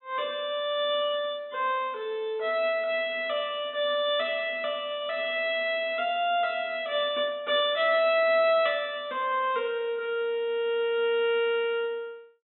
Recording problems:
treble cut off; nothing above 3.8 kHz

